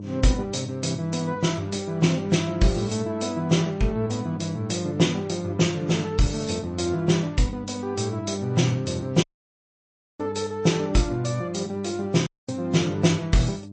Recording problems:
lossy codec; MP3, log-spectral distance 3 dB, nothing above 8.2 kHz
hum; 50 Hz, harmonics up to 600 Hz, SNR 13 dB
audio cutting out; at 9 s for 1 s and at 12 s

